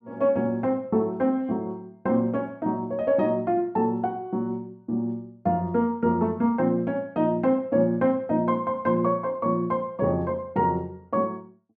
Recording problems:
none

